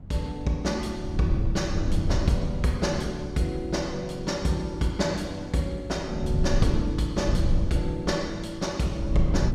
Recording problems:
wind on the microphone; below 110 Hz, SNR 2 dB

